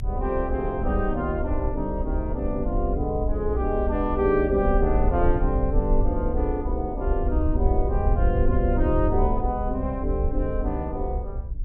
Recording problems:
low-frequency rumble; below 64 Hz, SNR 2 dB

